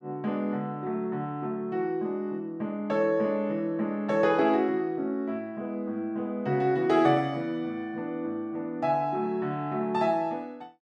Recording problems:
none

